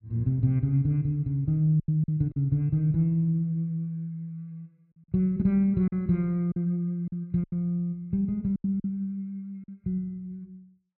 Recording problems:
packet loss; 5% of the sound replaced, filled with silence

